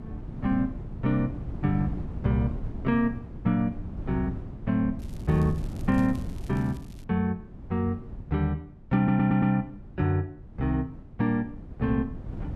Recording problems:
wind on the microphone; below 190 Hz, SNR 10 dB
crackle; from 5 to 7 s; loose cable, SNR 26 dB
audio stuttering; at 9 s

